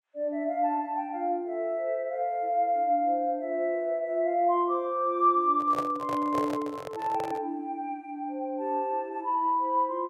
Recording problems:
microphone handling noise; from 5.5 to 7.5 s; peak -2 dB vs average level

